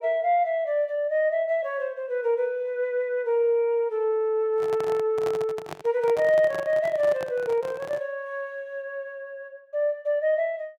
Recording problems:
handling noise; from 4.5 to 8 s; peak -6 dB vs average level

